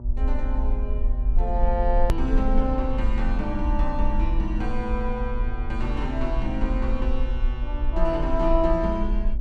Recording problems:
hum; 60 Hz, harmonics up to 960 Hz, SNR 11 dB
low-frequency rumble; below 50 Hz, SNR -1 dB
click at an edit; at 2 s

